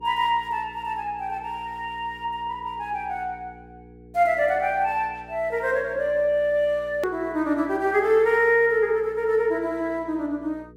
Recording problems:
hum; 60 Hz, harmonics up to 480 Hz, SNR 24 dB
hard cut with a click; at 7 s

